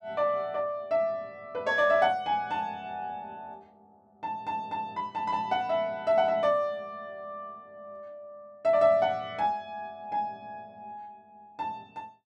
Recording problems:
none

